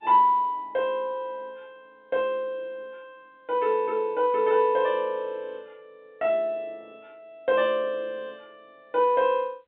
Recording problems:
phone line; 240 Hz to 3.7 kHz, G.711

